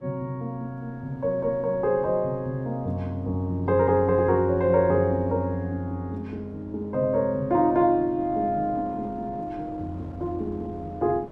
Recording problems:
wind noise; below 490 Hz, SNR 21 dB

